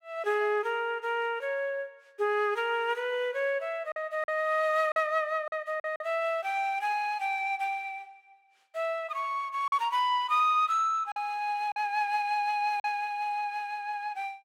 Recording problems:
packet loss; 3% of the sound replaced, filled with silence

